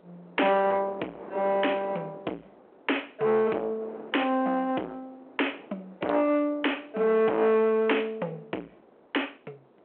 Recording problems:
phone line; 280 Hz to 3.2 kHz, G.726
distorted audio; soft clipping, signal-to-distortion ratio 8 dB
wind noise; below 790 Hz, SNR 20 dB

